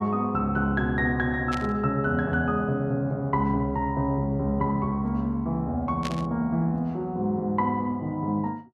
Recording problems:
static burst; at 1.5 s and at 6 s; peak -4 dB vs average level

